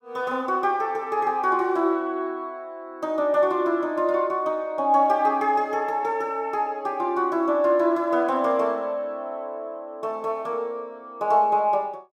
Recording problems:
none

